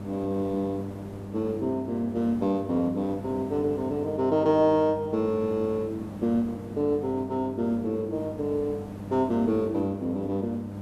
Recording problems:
electrical hum; 50 Hz, harmonics up to 1.2 kHz, SNR 12 dB
background hiss; slope -9 dB per octave, SNR 17 dB

